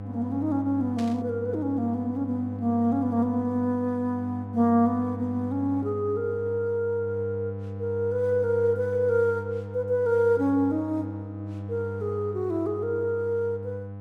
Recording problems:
electrical hum; 50 Hz, harmonics up to 1 kHz, SNR 10 dB
burst of static; at 1 s; peak -11 dB vs average level

